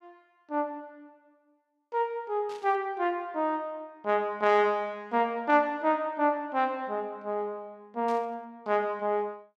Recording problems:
static burst; at 2.5 s and at 8 s; peak -15 dB vs average level

